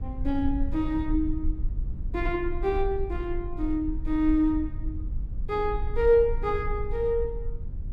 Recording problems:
rumble; below 56 Hz, strongest tone 20 Hz, SNR 7 dB

